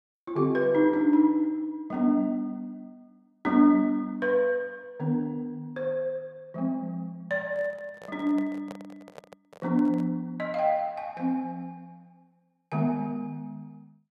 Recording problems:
microphone handling noise; from 7.5 to 10 s; peak -11 dB vs average level

